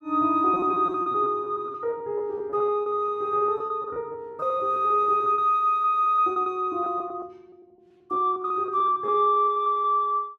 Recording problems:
packet loss; 16% of the sound replaced, filled with repeated pitch periods

